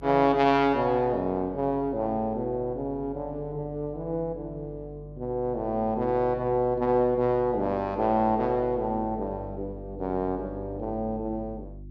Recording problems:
electrical hum; 50 Hz, harmonics up to 350 Hz, SNR 18 dB

